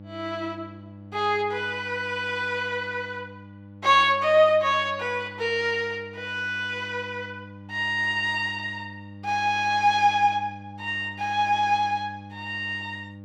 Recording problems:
hum; 50 Hz, harmonics up to 900 Hz, SNR 19 dB

